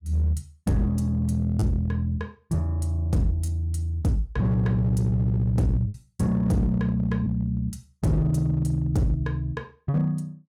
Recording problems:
distorted audio; hard clipping, signal-to-distortion ratio 11 dB
packet loss; 1.7% of the sound replaced, filled with repeated pitch periods

